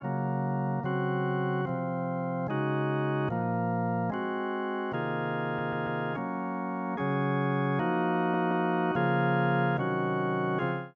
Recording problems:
audio stuttering; at 5.5 s and at 8 s

